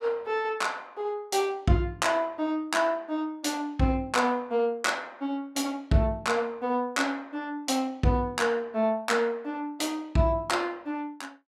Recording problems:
none

